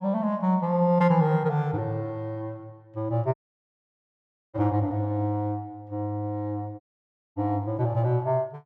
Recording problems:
dropout; at 3.5 s for 1 s and at 7 s for 0.5 s

